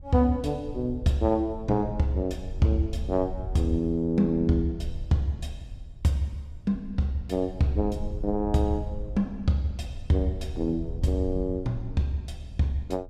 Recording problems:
wind on the microphone; below 82 Hz, SNR 11 dB

